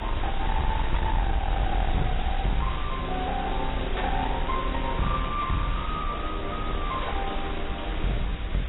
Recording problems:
lossy codec; AAC, log-spectral distance 12 dB, nothing above 3.8 kHz
distortion; soft clipping, signal-to-distortion ratio 7 dB
hiss; SNR 7 dB
low-frequency rumble; below 66 Hz, SNR 3 dB

